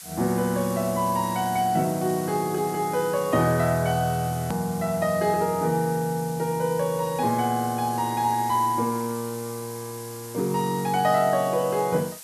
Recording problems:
background hiss; slope +2 dB per octave, SNR 14 dB
hard cut with a click; at 4.5 s

